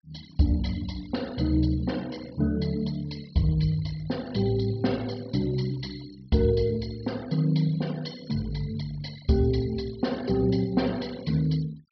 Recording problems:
treble cut off; nothing above 5.5 kHz
noise reduction artefacts; signal-to-artefact ratio 20 dB

